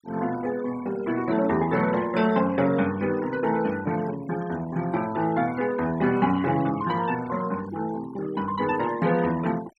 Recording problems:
denoising artefacts; signal-to-artefact ratio 17 dB

